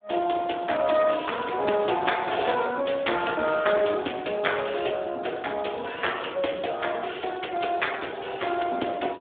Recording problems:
phone line; 260 Hz to 3.6 kHz, Speex

